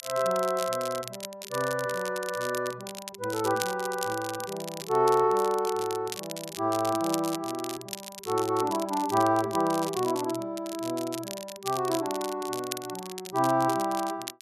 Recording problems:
crackle; vinyl, SNR 11 dB

